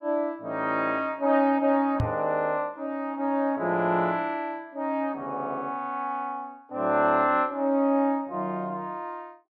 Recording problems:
knock on the microphone; at 2 s; peak +3 dB vs average level

